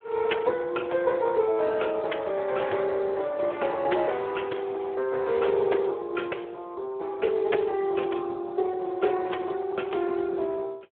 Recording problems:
phone line; 300 Hz to 3.4 kHz, Speex

